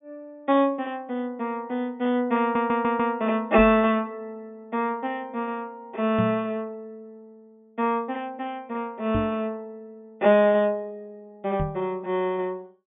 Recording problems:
treble cut off; nothing above 3.6 kHz
stutter; at 2.5 s
knock on the microphone; 4 times, first at 3.5 s; peak +2 dB vs average level

